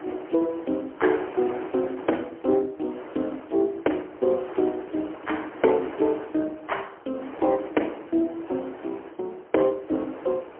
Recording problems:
telephone audio; 260 Hz to 3.2 kHz, AMR-NB, then MP3
wind noise; below 1.1 kHz, SNR 14 dB

